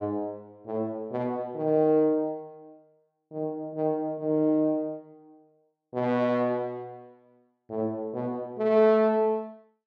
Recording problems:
none

